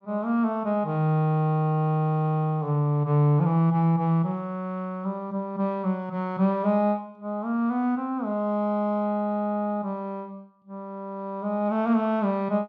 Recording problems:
none

